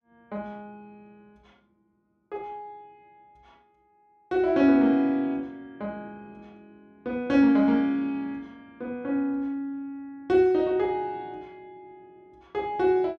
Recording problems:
none

